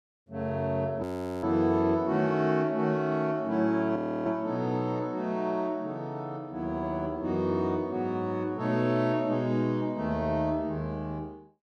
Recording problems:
audio freezing; at 1 s and at 4 s

